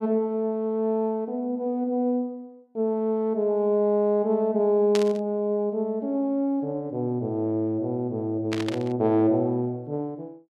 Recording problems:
static burst; at 5 s and at 8.5 s; peak -2 dB vs average level

